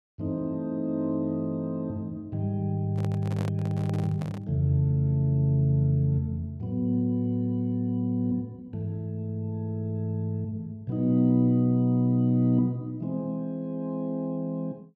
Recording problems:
handling noise; from 3 to 4.5 s; peak -7 dB vs average level

